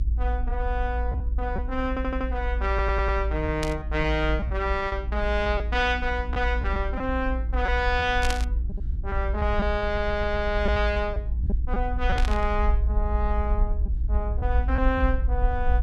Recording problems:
hum; 60 Hz, harmonics up to 360 Hz, SNR 16 dB
low-frequency rumble; below 58 Hz, SNR 1 dB
packet loss; 5% of the sound replaced, filled with repeated pitch periods
audio stuttering; at 2 s, at 2.5 s and at 10 s
burst of static; at 3.5 s, at 8 s and at 12 s; peak +1 dB vs average level

